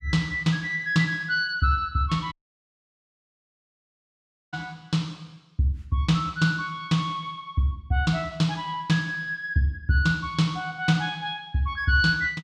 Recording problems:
dropout; at 2.5 s for 2 s

